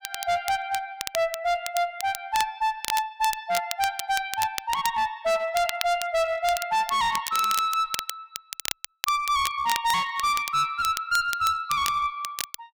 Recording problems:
distortion; hard clipping, uneven, signal-to-distortion ratio 9 dB
crackling; vinyl, SNR 9 dB

